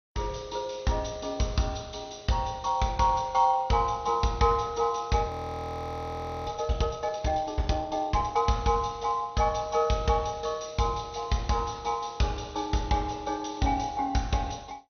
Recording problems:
codec artefacts; MP2, log-spectral distance 5 dB, nothing above 6.2 kHz
frozen audio; at 5.5 s for 1 s

